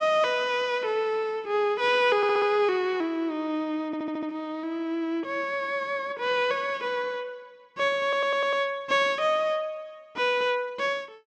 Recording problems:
audio stuttering; at 2 s, at 4 s and at 8 s

